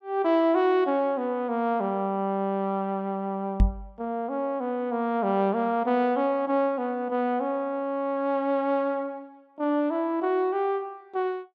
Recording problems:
knock on the microphone; at 3.5 s; peak +8 dB vs average level

